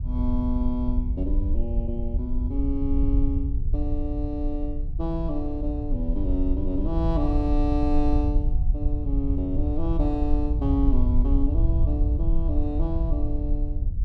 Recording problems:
rumble; below 66 Hz, SNR -2 dB

